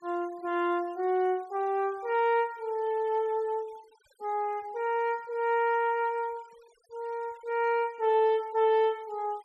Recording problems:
noise reduction artefacts; signal-to-artefact ratio 28 dB

